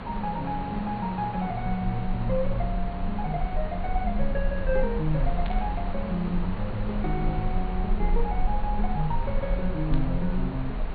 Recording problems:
low-pass filter; nothing above 4.4 kHz
hiss; SNR 8 dB
low-frequency rumble; below 42 Hz, strongest tone 18 Hz, SNR 4 dB
burst of static; at 5.5 s and at 10 s; peak -7 dB vs average level

